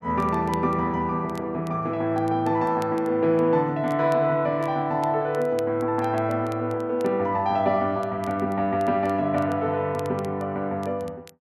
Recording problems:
crackling; vinyl, SNR 27 dB

